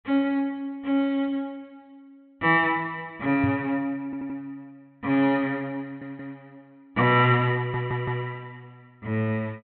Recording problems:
low-pass filter; nothing above 4 kHz
microphone thump; at 3.5 s; peak 0 dB vs average level
stutter; at 4 s, at 6 s and at 7.5 s

